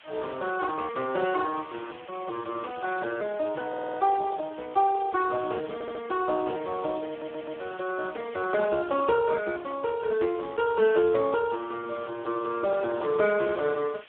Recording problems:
phone line; 280 Hz to 2.1 kHz, Speex
background hiss; SNR 21 dB
audio stuttering; at 3.5 s, at 5.5 s and at 7 s

